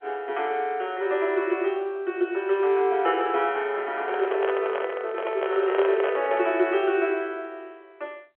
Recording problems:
phone line; 320 Hz to 3.3 kHz, G.711
handling noise; from 4 to 6.5 s; peak 0 dB vs average level

